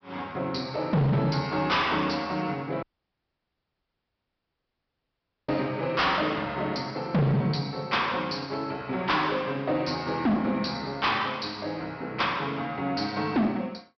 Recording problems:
low-pass filter; nothing above 5.5 kHz
distorted audio; hard clipping, signal-to-distortion ratio 7 dB
audio cutting out; at 3 s for 2.5 s

